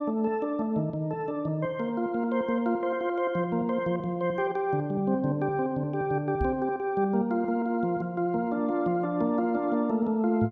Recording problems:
knock on the microphone; at 6.5 s; peak +1 dB vs average level

